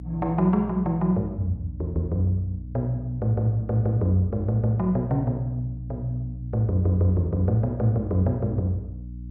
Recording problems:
hum; 60 Hz, harmonics up to 300 Hz, SNR 13 dB

